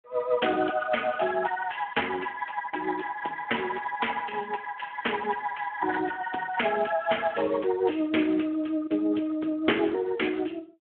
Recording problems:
telephone audio; 260 Hz to 3.4 kHz, Speex

